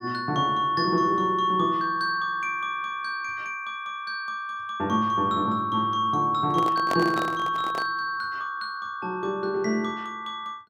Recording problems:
handling noise; from 6.5 to 8 s; peak 0 dB vs average level

